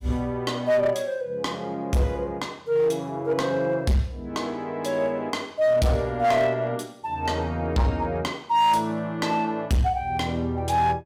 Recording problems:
distorted audio; hard clipping, uneven, signal-to-distortion ratio 11 dB

